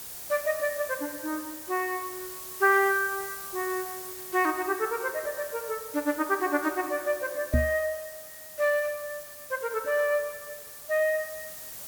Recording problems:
hiss; slope -1 dB per octave, SNR 11 dB
knock on the microphone; at 7.5 s; peak +7 dB vs average level

